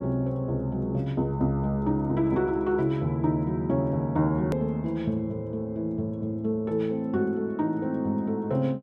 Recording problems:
edit click; at 4.5 s

